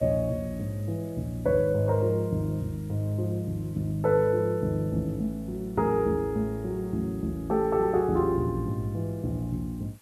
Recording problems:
background hiss; slope -2 dB per octave, SNR 28 dB

